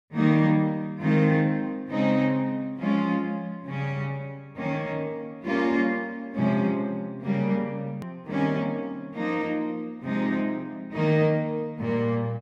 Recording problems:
hard cut with a click; at 8 s

